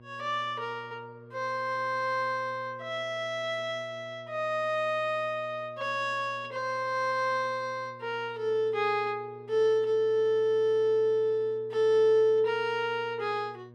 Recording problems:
electrical hum; 60 Hz, harmonics up to 1.1 kHz, SNR 23 dB

